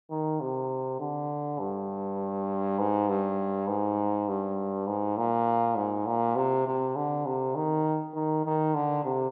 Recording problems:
none

